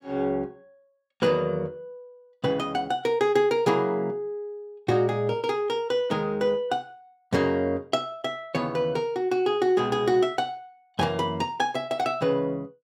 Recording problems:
none

